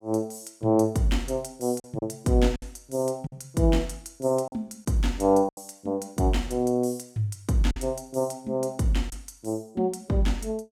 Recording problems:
packet loss; 4% of the sound replaced, filled with silence

